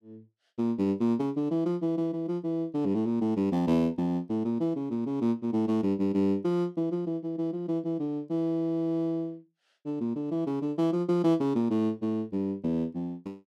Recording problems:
none

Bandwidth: 14 kHz